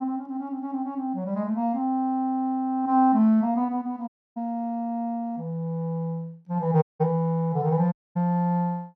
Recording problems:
audio cutting out; at 4 s, at 7 s and at 8 s

